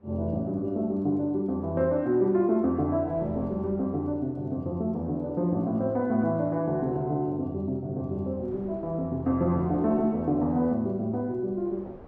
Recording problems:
wind on the microphone; below 600 Hz, SNR 24 dB

